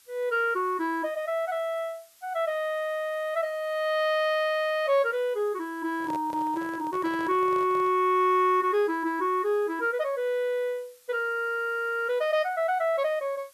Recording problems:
hiss; slope +3 dB per octave, SNR 28 dB
handling noise; from 6 to 8 s; peak -10 dB vs average level

